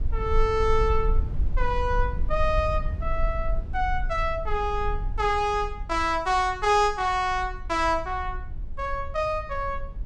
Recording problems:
low-frequency rumble; below 52 Hz, strongest tone 18 Hz, SNR 7 dB

